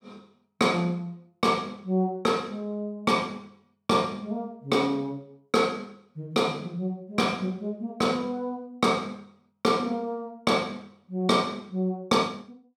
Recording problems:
none

